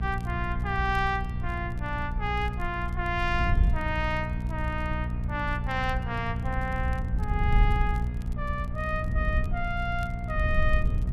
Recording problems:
hum; 60 Hz, harmonics up to 720 Hz, SNR 3 dB
wind on the microphone; below 76 Hz, SNR 1 dB
crackle; vinyl, SNR 28 dB

